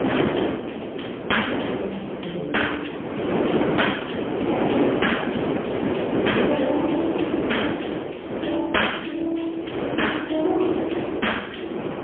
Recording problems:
phone line; 220 Hz to 3.4 kHz, AMR-NB, then MP3
wind on the microphone; below 630 Hz, SNR 0 dB

